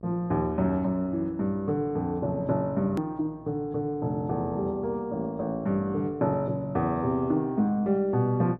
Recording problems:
hum; 60 Hz, harmonics up to 1.1 kHz, SNR 25 dB
hard cut with a click; at 3 s

